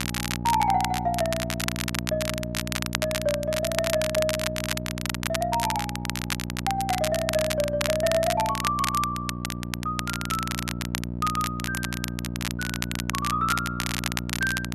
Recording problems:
hum; 60 Hz, harmonics up to 900 Hz, SNR 5 dB
crackling; vinyl, SNR 3 dB

